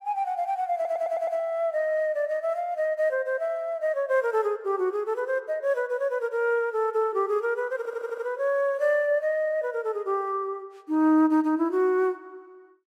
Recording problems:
stutter; at 1 s and at 8 s

